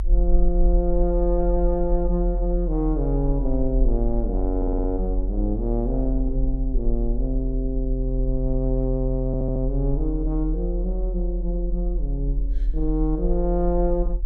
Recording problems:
low-frequency rumble; below 44 Hz, strongest tone 42 Hz, SNR 0 dB
stutter; at 4.5 s and at 9.5 s

